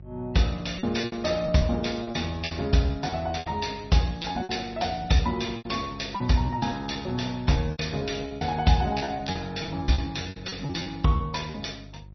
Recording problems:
codec artefacts; MP3, log-spectral distance 6 dB, nothing above 5.8 kHz
electrical hum; 50 Hz, harmonics up to 550 Hz, SNR 18 dB
packet loss; 15% of the sound replaced, filled with repeated pitch periods

